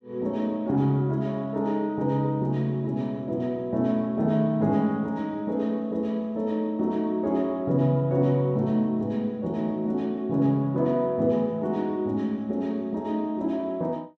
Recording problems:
none

